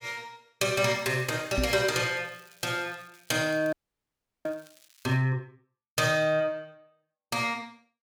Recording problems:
crackle; from 1 to 5 s; loose cable, SNR 27 dB
knock on the microphone; at 1.5 s; peak +2 dB vs average level
audio freezing; at 3.5 s for 0.5 s

